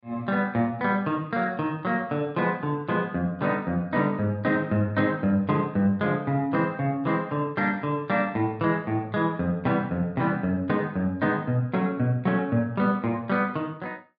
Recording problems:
none

